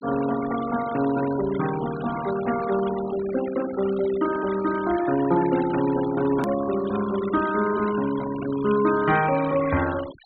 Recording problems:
low-pass filter; nothing above 4 kHz
noise reduction artefacts; signal-to-artefact ratio 14 dB
click at an edit; at 6.5 s

